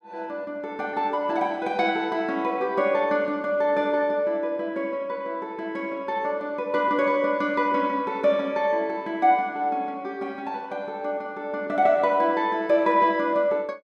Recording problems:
none

